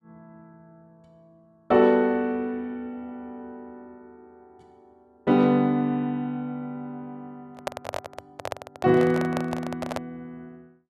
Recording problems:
microphone handling noise; from 7.5 to 10 s; peak -1 dB vs average level

